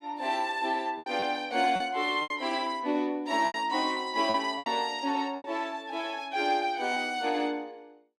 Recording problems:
packet loss; 7% of the sound replaced, filled with repeated pitch periods

